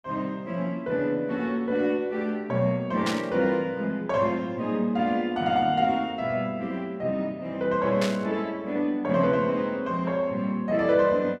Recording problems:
static burst; at 3 s and at 8 s; peak -1 dB vs average level

